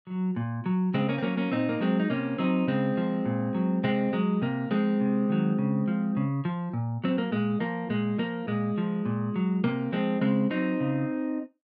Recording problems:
none

